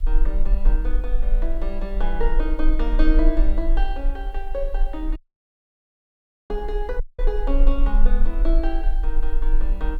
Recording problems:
background hiss; slope -5 dB per octave, SNR 29 dB
low-frequency rumble; below 34 Hz, strongest tone 24 Hz, SNR -6 dB
dropout; at 5 s for 1.5 s and at 7 s

